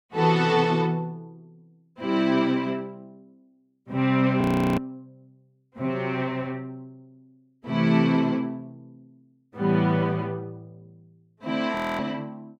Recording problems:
audio freezing; at 4.5 s and at 12 s

